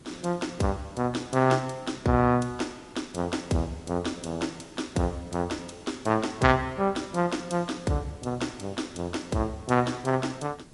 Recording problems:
lossy compression; MP3, log-spectral distance 4 dB, nothing above 11 kHz
hiss; SNR 23 dB

